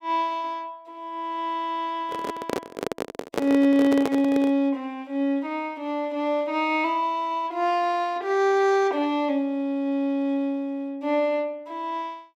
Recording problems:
handling noise; from 2 to 4.5 s; peak +3 dB vs average level

